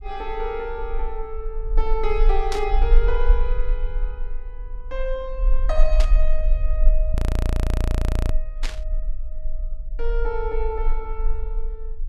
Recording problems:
rumble; below 38 Hz, strongest tone 18 Hz, SNR -5 dB
burst of static; at 2.5 s, at 6 s and at 8.5 s; peak +3 dB vs average level
frozen audio; at 7 s for 1 s

